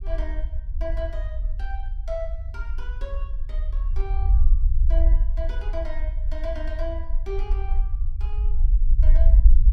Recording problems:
rumble; below 50 Hz, strongest tone 20 Hz, SNR -12 dB

